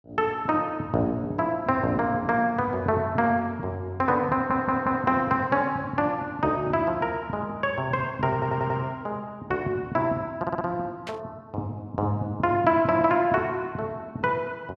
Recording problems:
stutter; at 4.5 s, at 8.5 s and at 10 s
static burst; at 11 s; peak -8 dB vs average level

